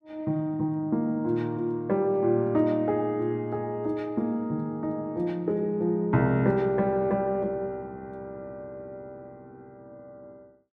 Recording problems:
none

